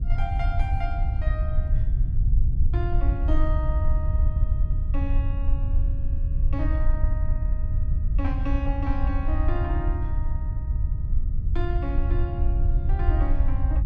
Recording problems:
rumble; below 72 Hz, SNR -9 dB

